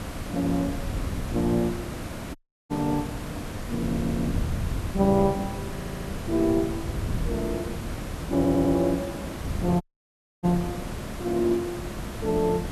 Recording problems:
background hiss; slope -5 dB per octave, SNR 10 dB
wind noise; below 120 Hz, SNR 9 dB
audio cutting out; at 2.5 s and at 10 s for 0.5 s
audio stuttering; at 4 s, at 5.5 s and at 8.5 s

